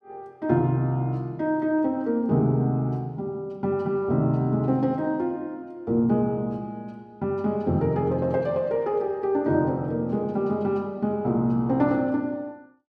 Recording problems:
none

